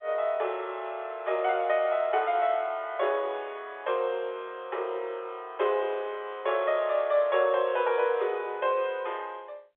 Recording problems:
phone line; 370 Hz to 3.6 kHz, G.711

